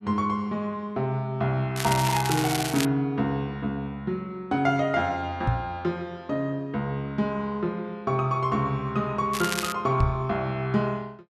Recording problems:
crackle; from 2 to 3 s and at 9.5 s; loose cable, SNR 4 dB
microphone thump; at 5.5 s and at 10 s; peak +5 dB vs average level

